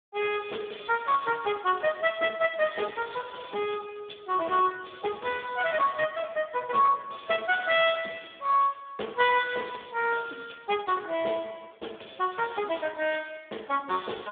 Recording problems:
telephone audio; 240 Hz to 3.5 kHz, Speex

